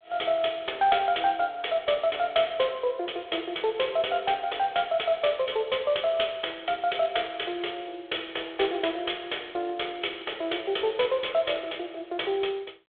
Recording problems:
phone line; 340 Hz to 3.6 kHz, G.726

